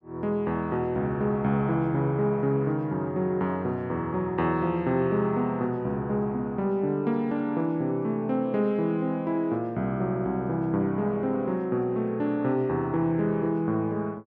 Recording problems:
none

